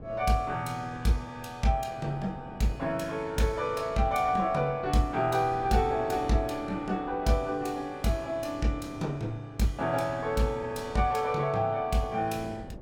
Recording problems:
wind on the microphone; below 430 Hz, SNR 19 dB

